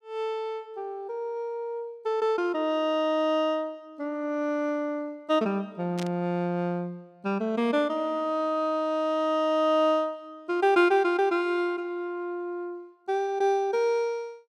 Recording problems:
burst of static; at 6 s; peak -7 dB vs average level

